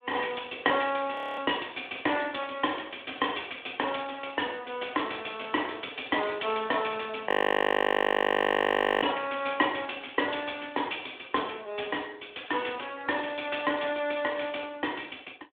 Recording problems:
telephone audio; 260 Hz to 3.6 kHz, Speex
frozen audio; at 1 s and at 7.5 s for 1.5 s

